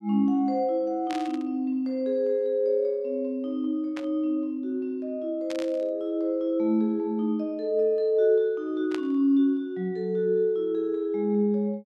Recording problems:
burst of static; 4 times, first at 1 s; peak -8 dB vs average level

